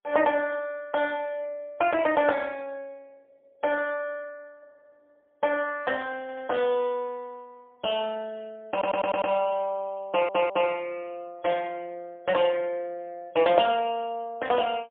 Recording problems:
telephone audio; 220 Hz to 3.3 kHz, AMR-NB, then MP3
audio stuttering; at 6 s, at 8.5 s and at 10 s

